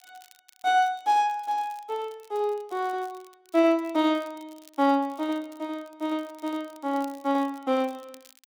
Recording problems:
crackling; vinyl, SNR 28 dB

